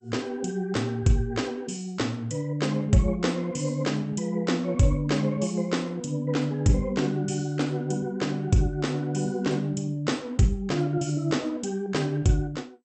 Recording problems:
lossy codec; MP2, log-spectral distance 2 dB, nothing above 8 kHz

